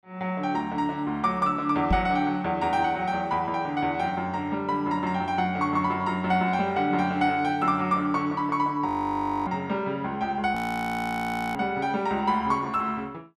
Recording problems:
microphone bump; at 2 s; peak +3 dB vs average level
audio freezing; at 9 s for 0.5 s and at 11 s for 1 s

